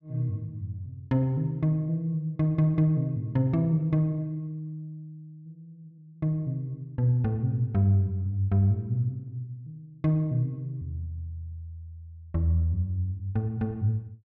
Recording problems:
none

